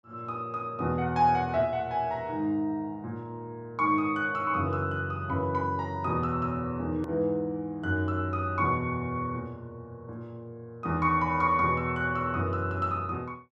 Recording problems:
hard cut with a click; at 7 s

